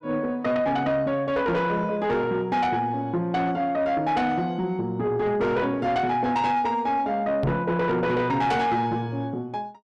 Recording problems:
distorted audio; soft clipping, signal-to-distortion ratio 11 dB
microphone thump; at 7.5 s; peak +2 dB vs average level

